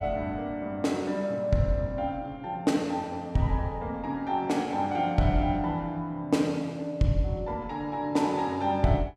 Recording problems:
none

